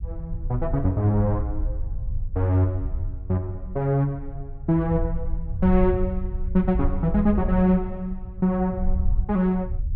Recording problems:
low-frequency rumble; below 72 Hz, SNR 7 dB

